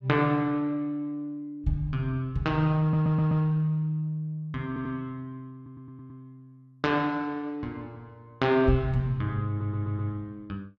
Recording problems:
audio stuttering; 4 times, first at 3 s

